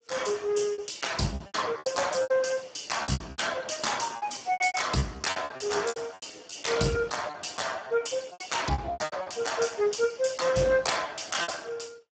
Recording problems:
codec artefacts; Speex, log-spectral distance 8 dB, nothing above 7.8 kHz
lost packets; 15% of the sound replaced, filled with repeated pitch periods

